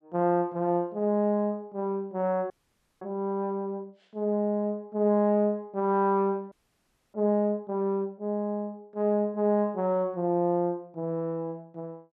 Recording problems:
frozen audio; at 2.5 s for 0.5 s and at 6.5 s for 0.5 s

